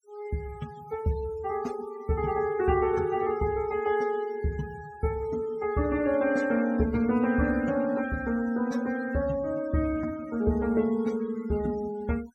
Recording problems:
denoising artefacts; signal-to-artefact ratio 19 dB

